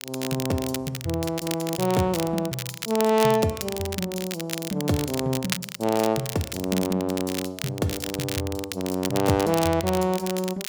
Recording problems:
crackling; vinyl, SNR 8 dB

